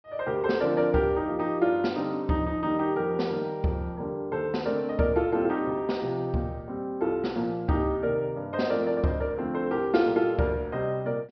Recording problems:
low-pass filter; nothing above 5.5 kHz

